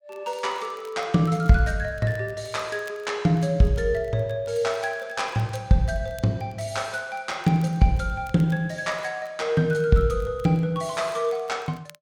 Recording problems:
crackle; vinyl, SNR 30 dB

